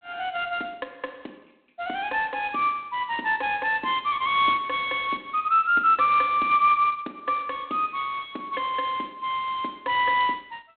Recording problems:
phone line; 240 Hz to 3.5 kHz, G.726

